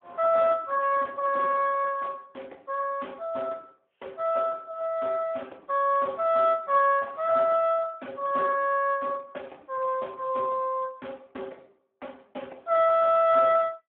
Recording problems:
telephone audio; 280 Hz to 3.3 kHz, Speex

